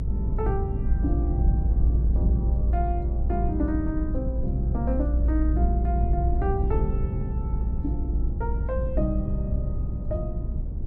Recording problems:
low-frequency rumble; below 74 Hz, strongest tone 58 Hz, SNR -5 dB

